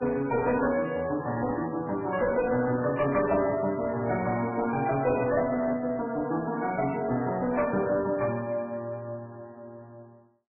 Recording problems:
lossy compression; MP3, log-spectral distance 3 dB, nothing above 2.4 kHz
distorted audio; hard clipping, uneven, signal-to-distortion ratio 11 dB

